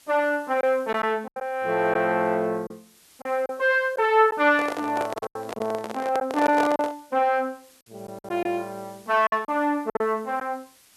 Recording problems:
background hiss; slope +1 dB per octave, SNR 29 dB
packet loss; 7% of the sound replaced, filled with silence
handling noise; from 4.5 to 7 s; peak 0 dB vs average level

